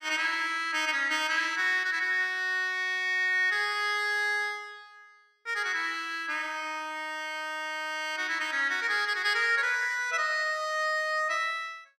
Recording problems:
none

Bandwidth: 14.5 kHz